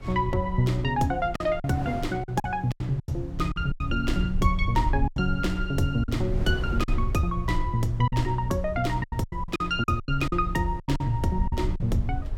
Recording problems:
rumble; below 76 Hz, SNR 6 dB
wind noise; below 470 Hz, SNR 17 dB
lost packets; 10% of the sound replaced, filled with silence

